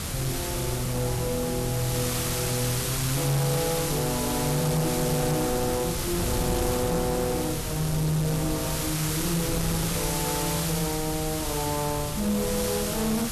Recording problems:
distortion; hard clipping, signal-to-distortion ratio 11 dB
hiss; slope 0 dB per octave, SNR 2 dB
wind noise; below 220 Hz, SNR 7 dB

